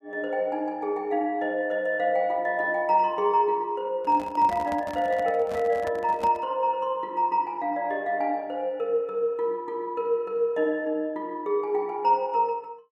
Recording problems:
handling noise; from 4 to 6.5 s; peak -6 dB vs average level

